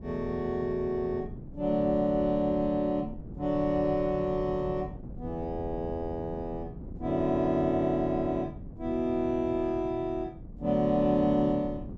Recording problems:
wind on the microphone; below 220 Hz, SNR 14 dB

